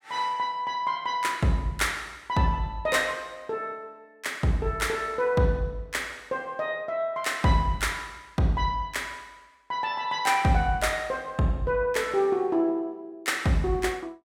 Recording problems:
none

